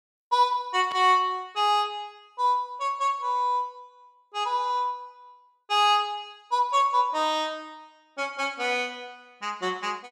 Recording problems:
burst of static; at 1 s; peak -11 dB vs average level

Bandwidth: 15 kHz